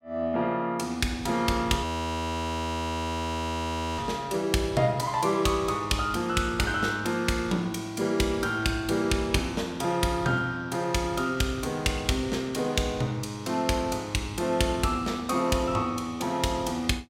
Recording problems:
audio freezing; at 2 s for 2 s

